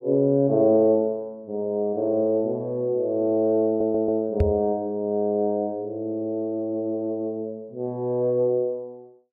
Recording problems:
audio stuttering; at 3.5 s
knock on the microphone; at 4.5 s; peak +5 dB vs average level

